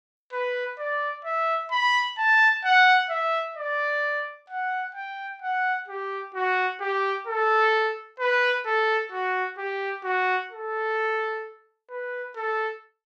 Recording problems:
none

